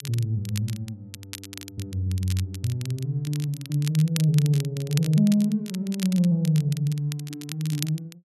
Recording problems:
crackling; vinyl, SNR 14 dB

